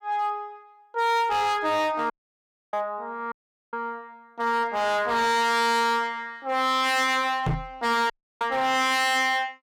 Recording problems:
distorted audio; hard clipping, signal-to-distortion ratio 7 dB
audio cutting out; at 2 s for 0.5 s, at 3.5 s and at 8 s
microphone thump; at 7.5 s; peak +2 dB vs average level

